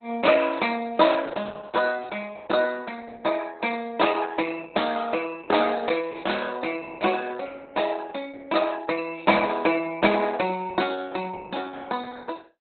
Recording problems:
lossy codec; Opus, log-spectral distance 5 dB, nothing above 4 kHz

